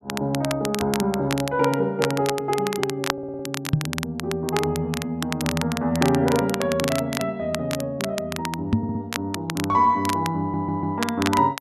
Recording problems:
crackle; vinyl, SNR 7 dB
stutter; at 3 s, at 9 s and at 10 s
knock on the microphone; at 3.5 s and at 8.5 s; peak +9 dB vs average level

